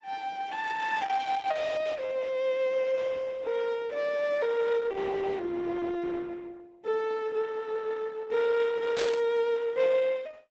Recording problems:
codec artefacts; Opus, log-spectral distance 3 dB, nothing above 7.6 kHz
static burst; at 9 s; peak -2 dB vs average level

